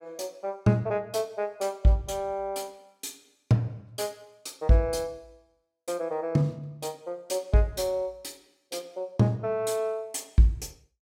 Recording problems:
none

